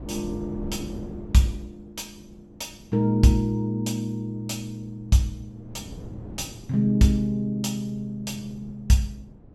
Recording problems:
wind noise; below 300 Hz, SNR 18 dB

